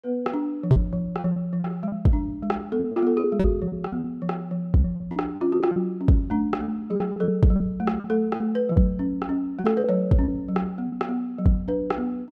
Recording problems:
packet loss; 10% of the sound replaced, filled with repeated pitch periods

